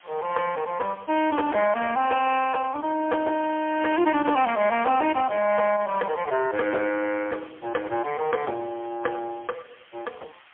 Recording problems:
phone line; 300 Hz to 3.2 kHz, AMR-NB, then MP3
background hiss; SNR 27 dB

